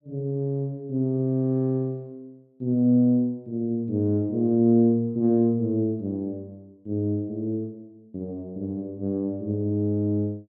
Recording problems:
none

